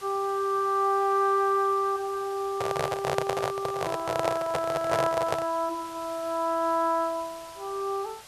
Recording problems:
hiss; slope -1 dB per octave, SNR 19 dB
handling noise; from 2.5 to 5.5 s; peak +4 dB vs average level

